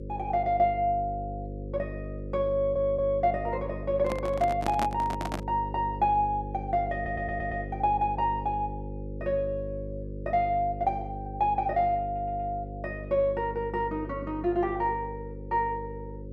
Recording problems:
hum; 50 Hz, harmonics up to 550 Hz, SNR 9 dB
stutter; at 2.5 s, at 7 s and at 12 s
microphone handling noise; from 4 to 5.5 s; peak +2 dB vs average level

